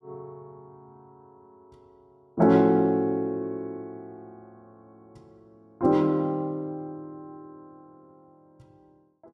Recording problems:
none

